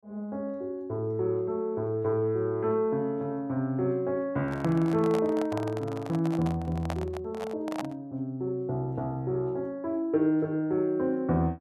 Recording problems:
handling noise; from 4.5 to 8 s; peak -1 dB vs average level

